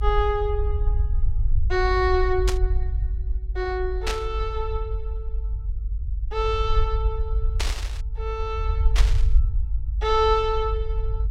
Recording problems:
low-frequency rumble; below 58 Hz, SNR 1 dB
static burst; 4 times, first at 2.5 s; peak +2 dB vs average level

